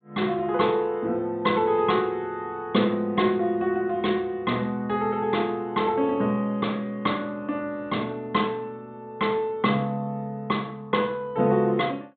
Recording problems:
treble missing; nothing above 4 kHz

